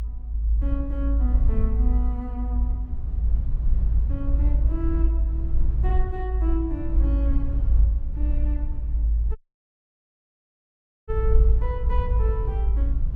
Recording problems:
low-frequency rumble; below 56 Hz, strongest tone 54 Hz, SNR -10 dB
audio cutting out; at 9.5 s for 1.5 s

